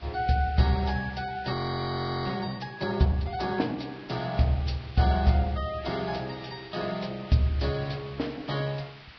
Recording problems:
lossy compression; Vorbis, log-spectral distance 6 dB, nothing above 5 kHz
background hiss; SNR 21 dB
frozen audio; at 1.5 s for 0.5 s

